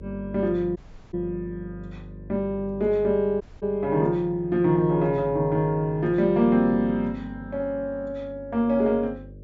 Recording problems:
low-pass filter; nothing above 7.5 kHz
hum; 50 Hz, harmonics up to 600 Hz, SNR 18 dB
audio cutting out; at 1 s and at 3.5 s

